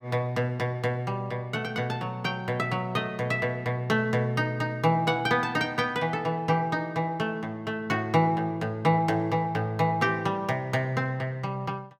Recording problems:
none

